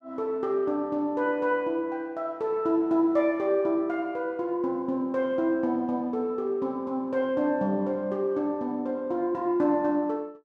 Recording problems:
none

